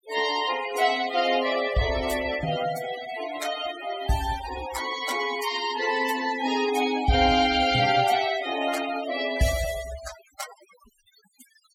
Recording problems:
denoising artefacts; signal-to-artefact ratio 11 dB

